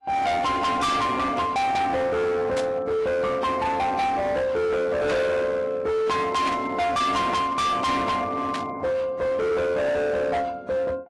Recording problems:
lossy codec; AAC, log-spectral distance 2 dB, nothing above 11.3 kHz
distortion; hard clipping, signal-to-distortion ratio 7 dB
static burst; 4 times, first at 2.5 s; peak -4 dB vs average level

